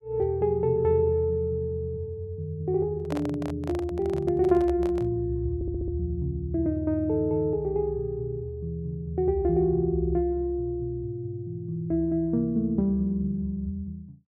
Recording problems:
microphone handling noise; from 3 to 5 s; peak -5 dB vs average level
audio stuttering; at 5.5 s

